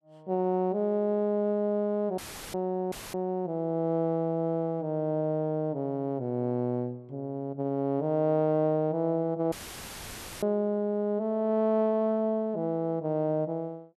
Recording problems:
audio cutting out; at 2 s, at 3 s and at 9.5 s for 1 s; filled with static

